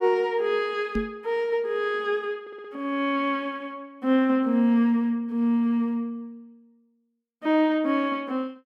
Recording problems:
knock on the microphone; at 1 s; peak 0 dB vs average level
audio stuttering; at 2.5 s

